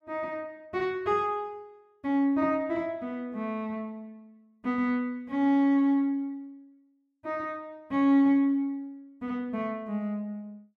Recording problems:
none

